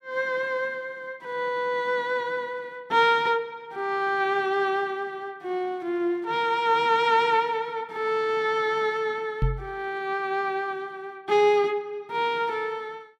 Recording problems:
microphone bump; at 9.5 s; peak +4 dB vs average level

